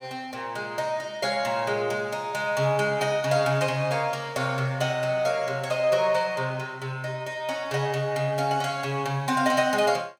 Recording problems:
none

